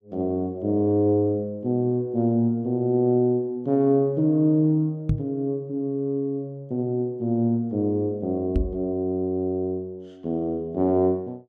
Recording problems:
microphone thump; at 5 s and at 8.5 s; peak +3 dB vs average level

